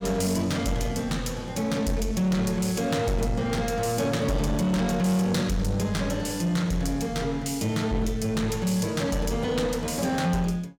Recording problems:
distorted audio; soft clipping, signal-to-distortion ratio 11 dB

